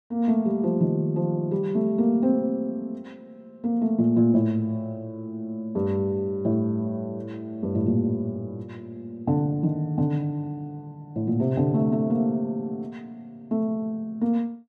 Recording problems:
none

